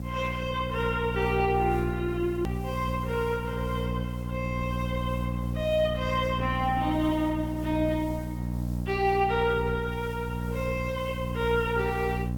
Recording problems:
codec artefacts; Opus, log-spectral distance 2 dB
electrical hum; 60 Hz, harmonics up to 780 Hz, SNR 4 dB
background hiss; slope +6 dB per octave, SNR 25 dB
hard cut with a click; at 2.5 s

